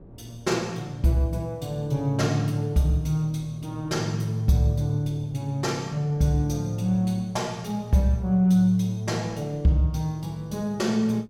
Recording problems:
wind noise; below 300 Hz, SNR 25 dB

